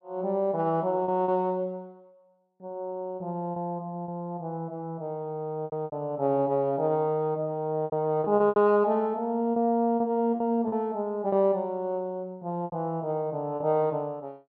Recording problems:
lost packets; 7% of the sound replaced, filled with repeated pitch periods

